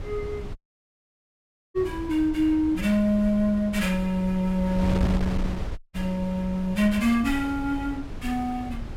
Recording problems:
wind noise; below 160 Hz, SNR 10 dB
audio cutting out; at 0.5 s for 1 s and at 6 s

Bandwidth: 16 kHz